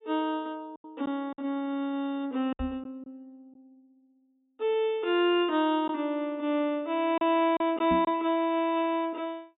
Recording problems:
low-pass filter; nothing above 4 kHz
packet loss; 4% of the sound replaced, filled with silence
knock on the microphone; at 2.5 s and at 8 s; peak -1 dB vs average level

